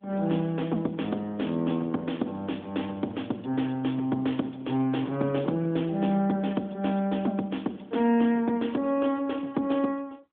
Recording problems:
telephone audio; 170 Hz to 3.5 kHz, AMR-NB

